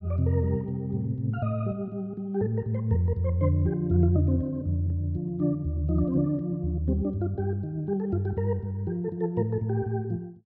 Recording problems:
none

